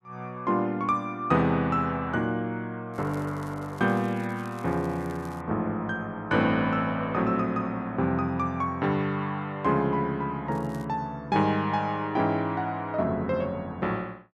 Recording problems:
crackle; from 3 to 5.5 s and at 11 s; loose cable, SNR 27 dB

